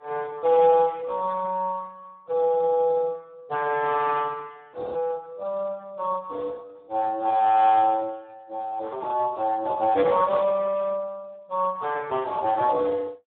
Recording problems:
phone line; 220 Hz to 2.1 kHz, Speex

